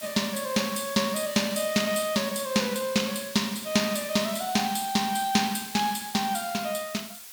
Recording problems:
background hiss; slope +3 dB per octave, SNR 12 dB

